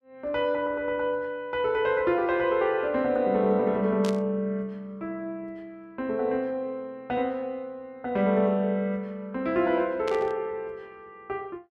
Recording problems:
static burst; at 4 s and at 10 s; peak -6 dB vs average level

